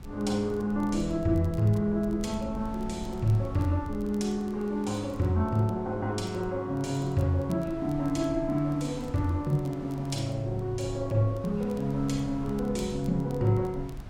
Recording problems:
rumble; below 120 Hz, SNR 16 dB
wind noise; below 1.4 kHz, SNR 23 dB
crackle; vinyl, SNR 29 dB

